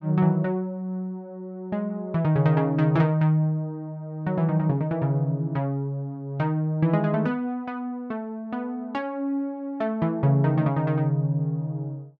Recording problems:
none

